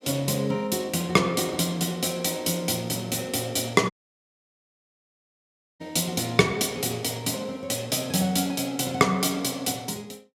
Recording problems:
dropout; at 4 s for 2 s

